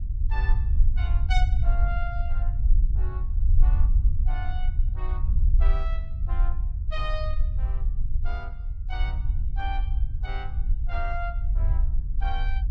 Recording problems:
low-frequency rumble; below 56 Hz, SNR -11 dB

